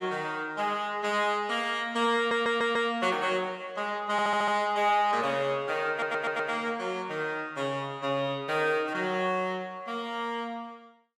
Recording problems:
audio stuttering; at 2 s, at 4 s and at 6 s

